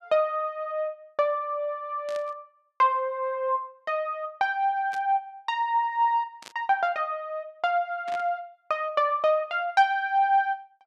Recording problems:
static burst; 4 times, first at 2 s; peak -11 dB vs average level

